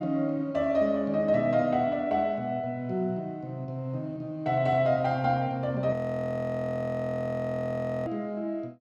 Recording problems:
frozen audio; at 6 s for 2 s

